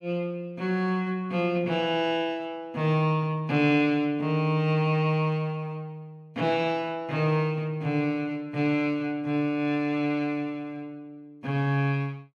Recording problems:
none

